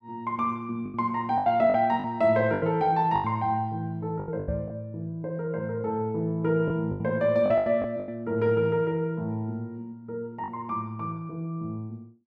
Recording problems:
lost packets; 8% of the sound replaced, filled with the last packet
microphone bump; at 4.5 s; peak -2 dB vs average level

